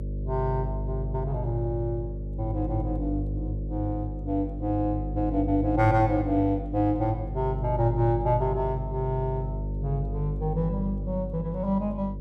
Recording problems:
hum; 50 Hz, harmonics up to 550 Hz, SNR 5 dB

